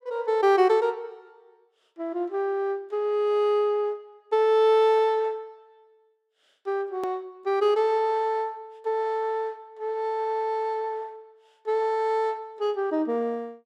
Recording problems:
hard cut with a click; at 7 s

